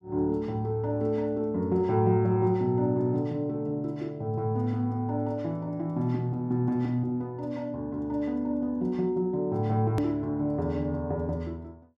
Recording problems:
edit click; at 10 s

